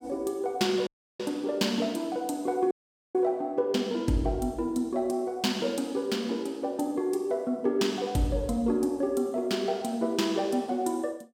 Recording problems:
audio cutting out; at 1 s and at 2.5 s

